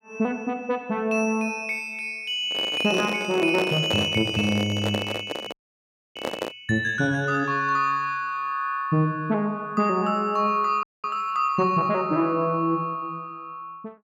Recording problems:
handling noise; from 2.5 to 6.5 s; peak 0 dB vs average level
frozen audio; at 5.5 s for 0.5 s and at 11 s

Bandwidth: 16.5 kHz